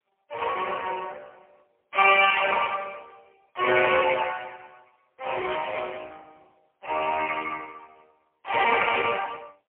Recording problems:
phone line; 320 Hz to 3.1 kHz, AMR-NB, then MP3
burst of static; at 5.5 s; peak -8 dB vs average level

